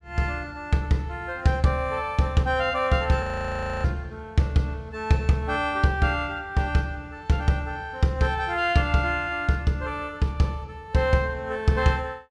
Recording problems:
frozen audio; at 3 s for 0.5 s

